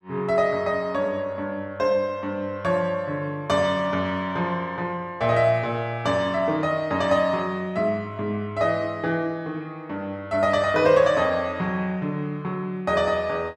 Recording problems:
none

